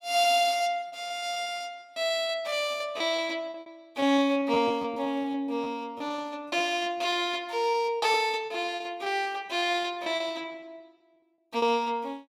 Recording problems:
lost packets; 13% of the sound replaced, filled with repeated pitch periods

